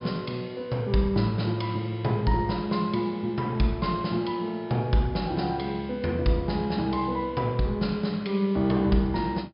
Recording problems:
low-pass filter; nothing above 5.5 kHz

